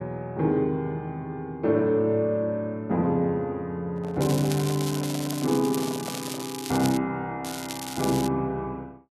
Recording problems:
handling noise; from 4 to 6.5 s; peak -7 dB vs average level
crackle; from 4 to 7 s and at 7.5 s; loose cable, SNR 9 dB

